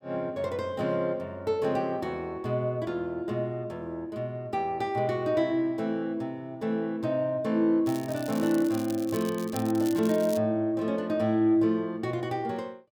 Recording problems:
crackle; from 8 to 10 s; loose cable, SNR 16 dB

